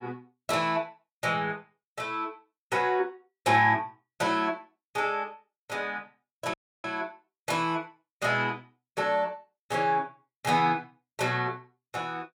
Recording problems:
audio cutting out; at 6.5 s

